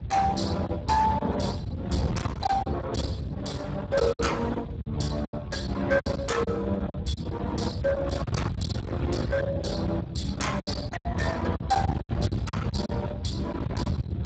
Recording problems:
lossy compression; Speex, log-spectral distance 3 dB, nothing above 7.8 kHz
distortion; hard clipping, uneven, signal-to-distortion ratio 11 dB
wind noise; below 300 Hz, SNR 4 dB
packet loss; 7% of the sound replaced, filled with silence

